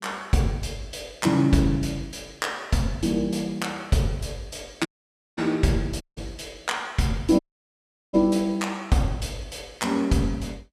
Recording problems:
dropout; at 5 s for 0.5 s, at 6 s and at 7.5 s for 0.5 s

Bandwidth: 14.5 kHz